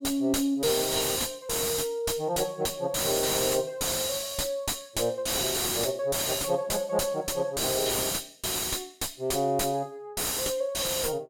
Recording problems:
distortion; soft clipping, signal-to-distortion ratio 2 dB

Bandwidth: 16.5 kHz